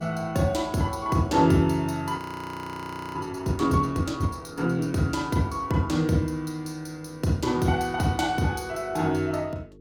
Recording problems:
hum; 50 Hz, harmonics up to 450 Hz, SNR 26 dB
frozen audio; at 2 s for 1 s

